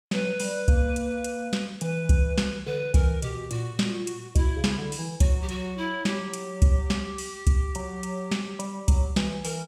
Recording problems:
none

